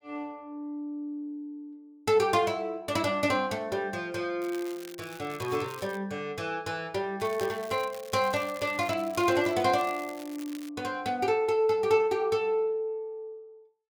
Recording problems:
crackle; from 4.5 to 6 s, from 7 to 9.5 s and from 9.5 to 11 s; loose cable, SNR 19 dB

